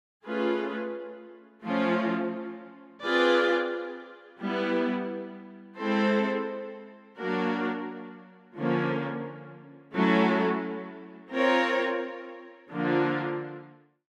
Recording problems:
none

